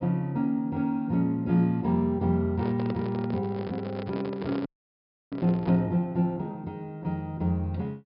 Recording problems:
low-pass filter; nothing above 5.5 kHz
microphone handling noise; from 2.5 to 6 s; peak -3 dB vs average level
audio freezing; at 4.5 s for 0.5 s

